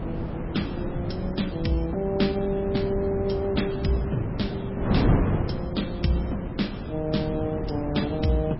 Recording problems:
codec artefacts; MP3, log-spectral distance 3 dB, nothing above 5.5 kHz
wind on the microphone; below 340 Hz, SNR 2 dB

